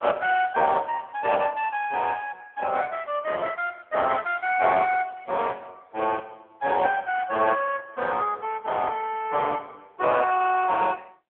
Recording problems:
phone line; 340 Hz to 3.3 kHz, AMR-NB

